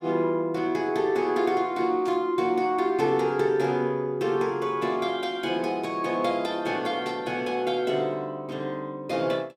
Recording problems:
static burst; at 2 s and at 7 s; peak -13 dB vs average level

